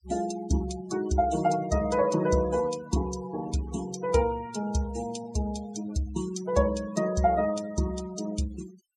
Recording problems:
denoising artefacts; signal-to-artefact ratio 16 dB

